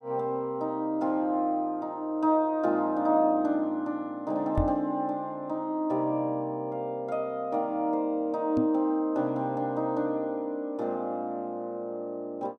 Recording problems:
knock on the microphone; at 4.5 s and at 8.5 s; peak +3 dB vs average level

